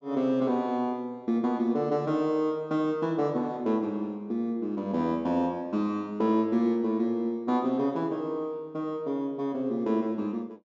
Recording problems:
treble cut off; nothing above 8 kHz

